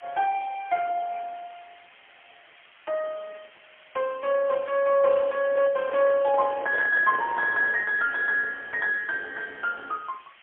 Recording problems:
phone line; 300 Hz to 2.8 kHz, AMR-NB, then MP3
background hiss; SNR 27 dB
microphone handling noise; from 5.5 to 8 s; peak -5 dB vs average level

